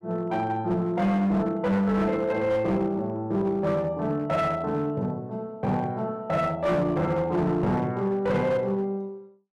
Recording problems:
distorted audio; hard clipping, uneven, signal-to-distortion ratio 11 dB

